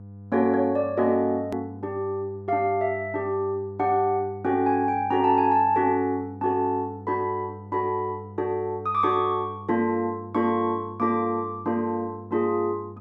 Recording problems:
hum; 50 Hz, harmonics up to 700 Hz, SNR 17 dB
click at an edit; at 1.5 s

